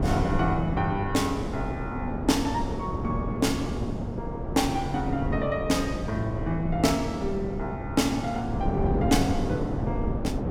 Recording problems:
wind on the microphone; below 350 Hz, SNR 3 dB

